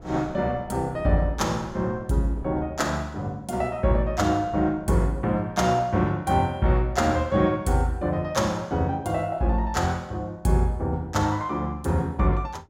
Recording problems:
wind on the microphone; below 400 Hz, SNR 20 dB

